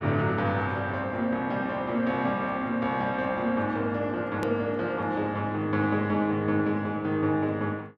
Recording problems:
click at an edit; at 4.5 s

